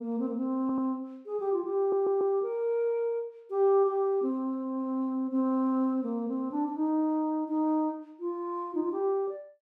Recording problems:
stutter; at 0.5 s and at 2 s

